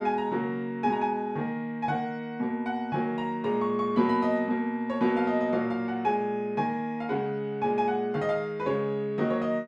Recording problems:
none

